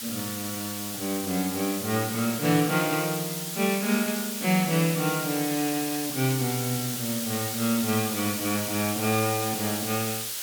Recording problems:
hiss; slope +3 dB per octave, SNR 3 dB

